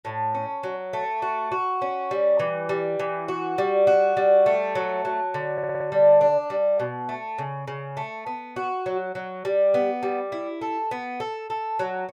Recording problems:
stutter; at 5.5 s

